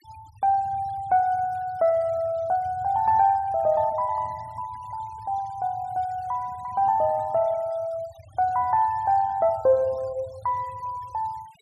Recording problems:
denoising artefacts; signal-to-artefact ratio 27 dB

